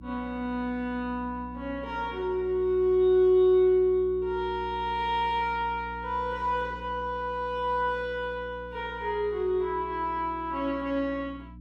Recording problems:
electrical hum; 60 Hz, harmonics up to 300 Hz, SNR 18 dB

